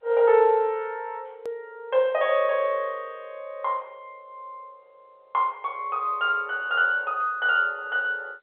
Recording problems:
telephone audio; 340 Hz to 3.8 kHz, G.711
click at an edit; at 1.5 s

